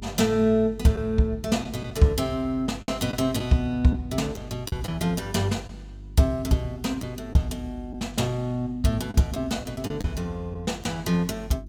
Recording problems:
hum; 50 Hz, harmonics up to 350 Hz, SNR 18 dB
lost packets; 4% of the sound replaced, filled with the last packet

